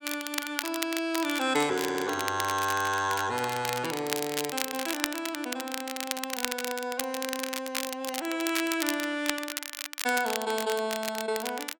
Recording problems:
crackling; vinyl, SNR 4 dB
audio stuttering; at 2 s

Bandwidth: 17 kHz